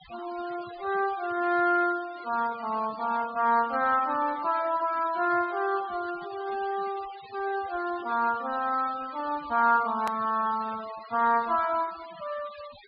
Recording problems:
treble missing; nothing above 4.8 kHz
noise reduction artefacts; signal-to-artefact ratio 18 dB
edit click; at 10 s

